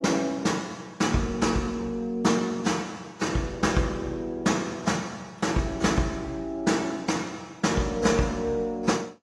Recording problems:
lossy codec; AAC, log-spectral distance 3 dB, nothing above 12 kHz

